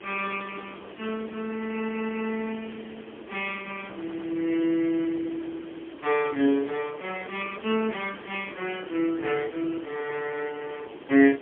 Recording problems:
telephone audio; 240 Hz to 3.2 kHz, AMR-NB, then MP3
hiss; SNR 15 dB
stutter; at 1.5 s and at 4 s

